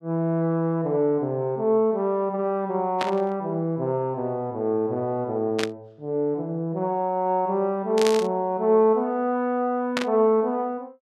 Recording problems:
static burst; 4 times, first at 3 s; peak +1 dB vs average level

